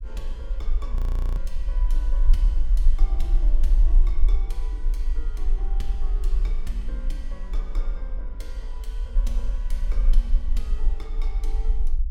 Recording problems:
low-frequency rumble; below 40 Hz, strongest tone 22 Hz, SNR -16 dB
audio freezing; at 1 s

